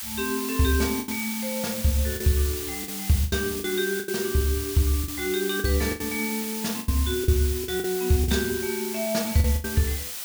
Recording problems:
hiss; slope +3 dB per octave, SNR 5 dB
lost packets; 9% of the sound replaced, filled with the last packet

